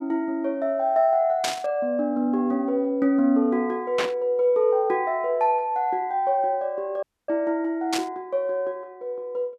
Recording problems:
static burst; at 1.5 s, at 4 s and at 8 s; peak +1 dB vs average level
dropout; at 7 s

